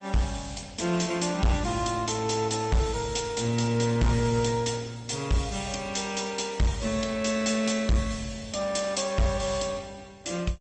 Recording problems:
codec artefacts; MP2, then Opus, log-spectral distance 8 dB, nothing above 8.2 kHz
distortion; hard clipping, signal-to-distortion ratio 11 dB

